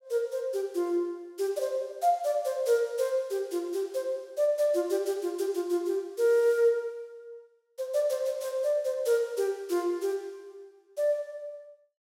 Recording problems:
none

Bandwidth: 16.5 kHz